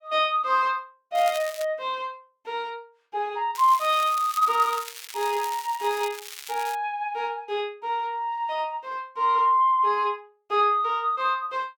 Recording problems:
crackling; at 1 s and from 3.5 to 7 s; loose cable, SNR 14 dB

